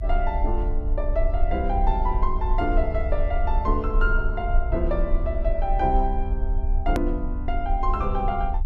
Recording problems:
low-frequency rumble; below 50 Hz, strongest tone 30 Hz, SNR 0 dB
hard cut with a click; at 7 s

